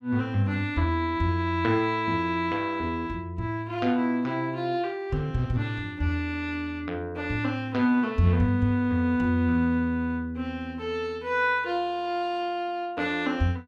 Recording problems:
none

